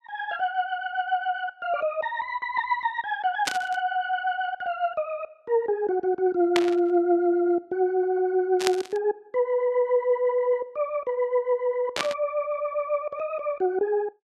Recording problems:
burst of static; 4 times, first at 3.5 s; peak +4 dB vs average level

